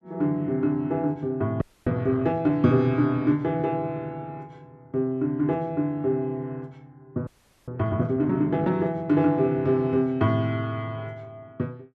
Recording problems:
frozen audio; at 1.5 s and at 7.5 s

